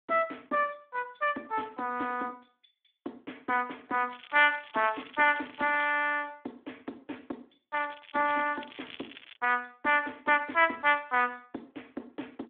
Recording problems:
telephone audio; 220 Hz to 3.4 kHz, Speex
crackling; from 4 to 6 s and from 8 to 9.5 s; loose cable, SNR 19 dB

